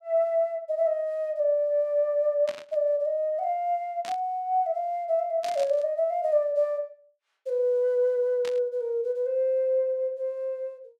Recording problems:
static burst; 4 times, first at 2.5 s; peak -9 dB vs average level

